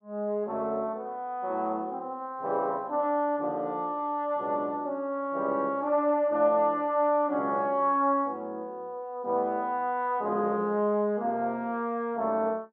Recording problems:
none

